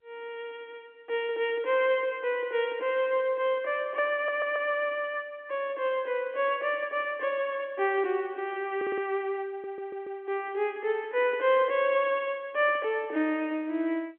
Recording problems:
phone line; 220 Hz to 3.4 kHz, G.711
audio stuttering; at 4 s, at 9 s and at 9.5 s

